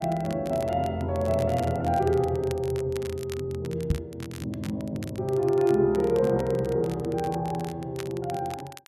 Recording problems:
crackling; vinyl, SNR 19 dB
knock on the microphone; at 4 s; peak +5 dB vs average level

